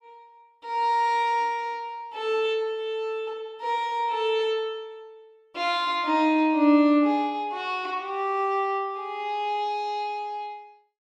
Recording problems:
none

